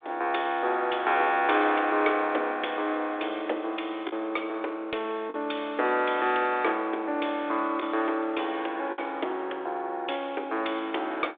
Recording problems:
phone line; 280 Hz to 3.6 kHz, G.726
lost packets; 1.4% of the sound replaced, filled with the last packet

